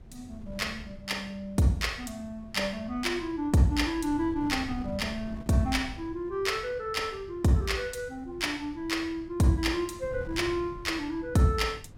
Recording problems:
wind on the microphone; below 160 Hz, SNR 16 dB

